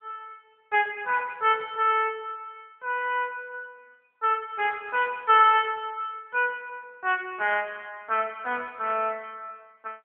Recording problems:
phone line; 260 Hz to 3.3 kHz, AMR-NB

